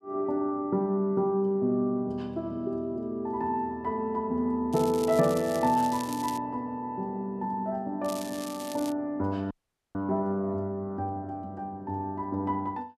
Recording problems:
crackling; from 4.5 to 6.5 s and at 8 s; loose cable, SNR 13 dB
dropout; at 9.5 s

